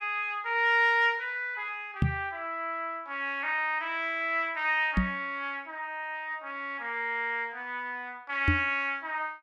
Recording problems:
knock on the microphone; at 2 s, at 5 s and at 8.5 s; peak +7 dB vs average level

